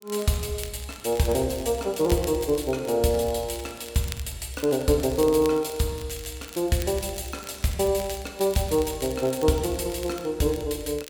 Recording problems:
crackling; vinyl, SNR 17 dB

